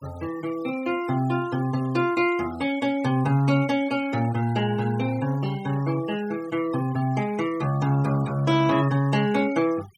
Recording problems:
denoising artefacts; signal-to-artefact ratio 20 dB

